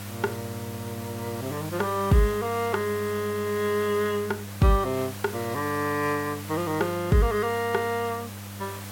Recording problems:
hum; 50 Hz, harmonics up to 500 Hz, SNR 13 dB
background hiss; SNR 13 dB

